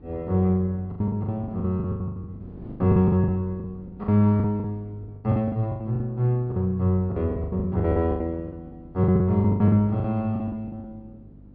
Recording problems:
treble missing; nothing above 4.9 kHz
electrical hum; 50 Hz, harmonics up to 300 Hz, SNR 25 dB
wind on the microphone; below 320 Hz, SNR 23 dB
packet loss; 20% of the sound replaced, filled with the last packet

